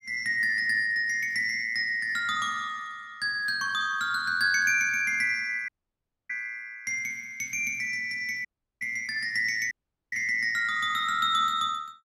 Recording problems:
audio cutting out; at 5.5 s for 0.5 s, at 8.5 s and at 9.5 s

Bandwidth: 16 kHz